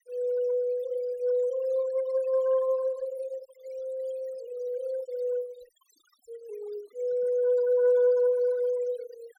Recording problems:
noise reduction artefacts; signal-to-artefact ratio 24 dB

